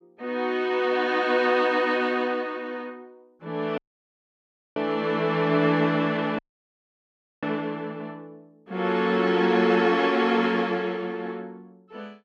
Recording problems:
dropout; at 4 s for 1 s and at 6.5 s for 1 s

